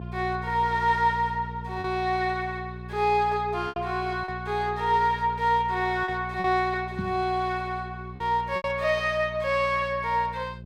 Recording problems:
hum; 60 Hz, harmonics up to 600 Hz, SNR 13 dB
lost packets; 3% of the sound replaced, filled with repeated pitch periods
microphone bump; at 7 s; peak -2 dB vs average level

